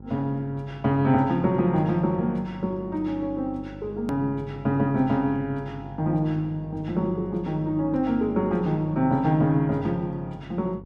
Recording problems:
hum; 50 Hz, harmonics up to 950 Hz, SNR 17 dB
hard cut with a click; at 4 s

